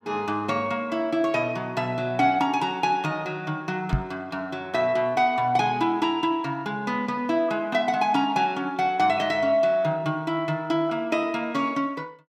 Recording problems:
microphone bump; at 4 s; peak +4 dB vs average level

